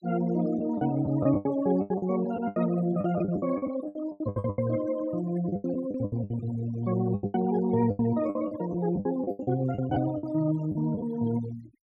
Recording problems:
denoising artefacts; signal-to-artefact ratio 17 dB
packet loss; 16% of the sound replaced, filled with the last packet

